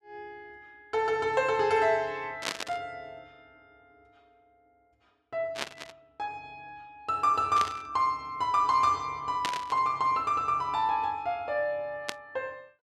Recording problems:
burst of static; 5 times, first at 2.5 s; peak +2 dB vs average level

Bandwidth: 13 kHz